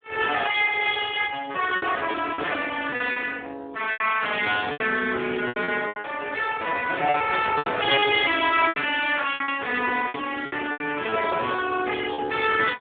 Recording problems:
phone line; 260 Hz to 3.6 kHz, Speex
lost packets; 10% of the sound replaced, filled with repeated pitch periods

